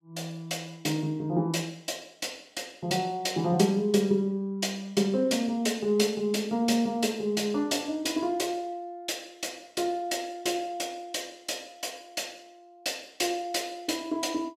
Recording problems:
none

